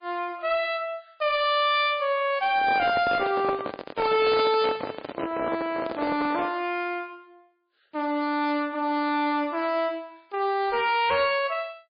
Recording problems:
lossy codec; MP3, log-spectral distance 3 dB, nothing above 4.1 kHz
distortion; hard clipping, signal-to-distortion ratio 10 dB
handling noise; from 2.5 to 6.5 s; peak -1 dB vs average level

